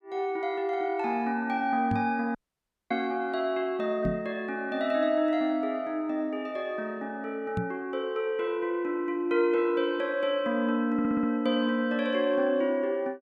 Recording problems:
microphone thump; at 2 s, at 4 s and at 7.5 s; peak +1 dB vs average level
audio cutting out; at 2.5 s for 0.5 s
stutter; at 11 s

